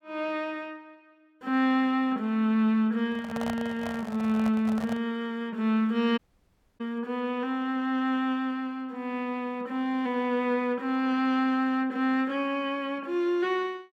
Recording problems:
microphone handling noise; from 3 to 5 s; peak -4 dB vs average level
dropout; at 6 s for 0.5 s

